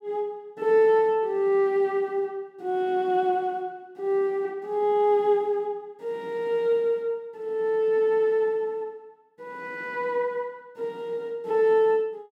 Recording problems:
none

